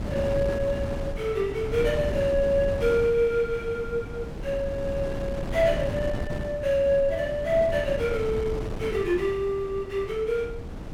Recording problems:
wind noise; below 330 Hz, SNR 8 dB

